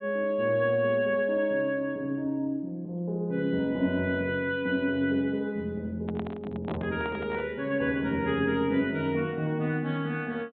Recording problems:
treble missing; nothing above 4 kHz
handling noise; from 6 to 7.5 s; peak -6 dB vs average level

